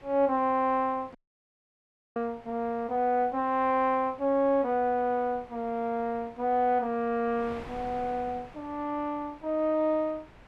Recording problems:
wind noise; below 1.6 kHz, SNR 22 dB
audio cutting out; at 1 s for 1 s

